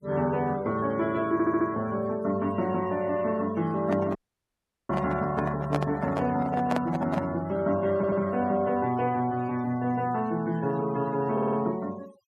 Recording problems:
noise reduction artefacts; signal-to-artefact ratio 21 dB
audio stuttering; at 1.5 s, at 8 s and at 11 s
handling noise; from 4 to 7.5 s; peak +3 dB vs average level
audio cutting out; at 4 s for 0.5 s

